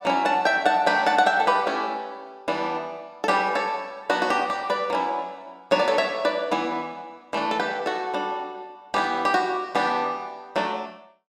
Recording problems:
none

